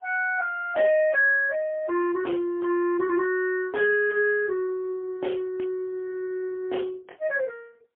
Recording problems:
telephone audio; 300 Hz to 3 kHz, AMR-NB, then MP3

